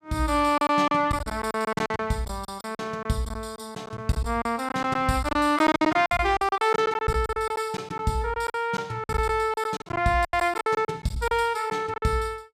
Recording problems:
lost packets; 15% of the sound replaced, filled with silence

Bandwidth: 14.5 kHz